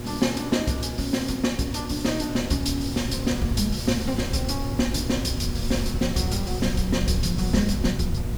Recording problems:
electrical hum; 60 Hz, harmonics up to 960 Hz, SNR 11 dB
hiss; slope -4 dB per octave, SNR 15 dB
wind noise; below 110 Hz, SNR 6 dB

